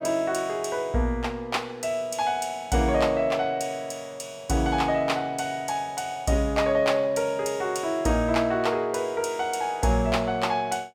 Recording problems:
none

